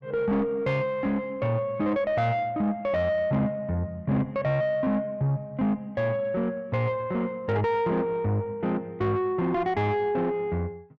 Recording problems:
distorted audio; soft clipping, signal-to-distortion ratio 11 dB

